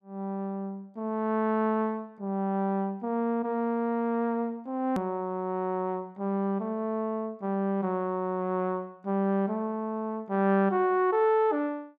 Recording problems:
edit click; at 5 s

